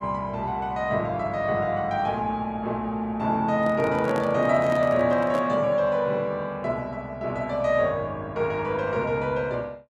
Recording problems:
handling noise; from 3.5 to 5.5 s; peak -3 dB vs average level

